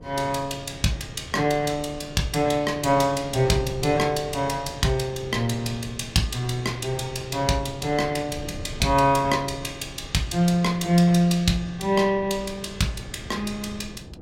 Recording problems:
wind on the microphone; below 250 Hz, SNR 17 dB

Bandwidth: 16 kHz